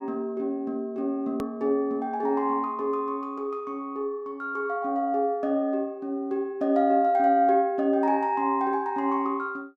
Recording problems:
click at an edit; at 1.5 s

